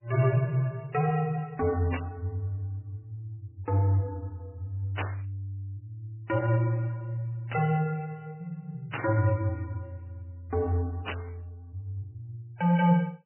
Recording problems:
lossy codec; MP3, log-spectral distance 2 dB, nothing above 2.7 kHz
burst of static; 5 times, first at 2 s; peak 0 dB vs average level

